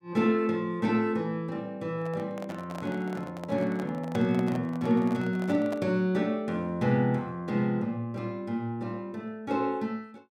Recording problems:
microphone handling noise; from 2 to 6 s; peak -5 dB vs average level

